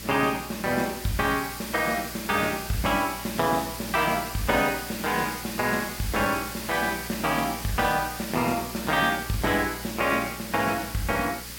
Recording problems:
hum; 60 Hz, harmonics up to 540 Hz, SNR 18 dB
hiss; slope +2 dB per octave, SNR 10 dB

